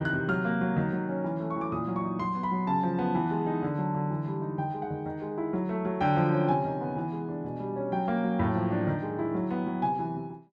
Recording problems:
none

